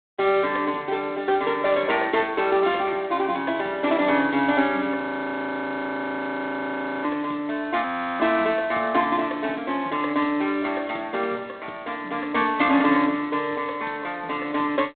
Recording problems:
telephone audio; 220 Hz to 3.9 kHz, G.726
audio freezing; at 5 s for 2 s and at 8 s

